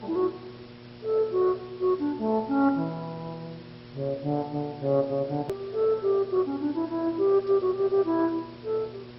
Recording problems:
codec artefacts; MP2, log-spectral distance 5 dB, nothing above 20.1 kHz
hum; 60 Hz, harmonics up to 1.1 kHz, SNR 20 dB
background hiss; slope -3 dB per octave, SNR 23 dB
edit click; at 5.5 s

